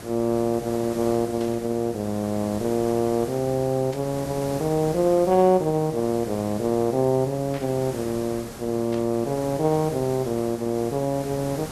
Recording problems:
hiss; SNR 14 dB
burst of static; 4 times, first at 1.5 s; peak -13 dB vs average level

